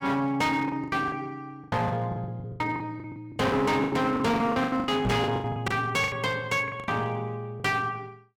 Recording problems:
distortion; hard clipping, signal-to-distortion ratio 8 dB
packet loss; 18% of the sound replaced, filled with the last packet
microphone bump; at 5 s; peak +3 dB vs average level

